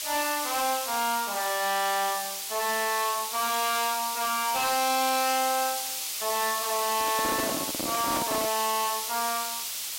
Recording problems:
distortion; hard clipping, signal-to-distortion ratio 6 dB
hiss; SNR 2 dB
crackle; from 3.5 to 5 s and from 7 to 9 s; loose cable, SNR 28 dB
handling noise; from 7 to 8.5 s; peak 0 dB vs average level

